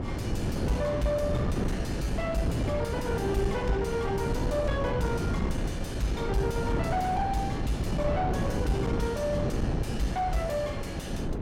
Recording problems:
distorted audio; soft clipping, signal-to-distortion ratio 10 dB
wind on the microphone; below 310 Hz, SNR 0 dB

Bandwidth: 16.5 kHz